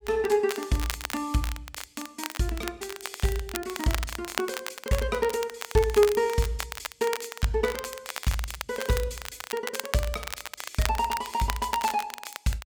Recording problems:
crackle; vinyl, SNR 8 dB

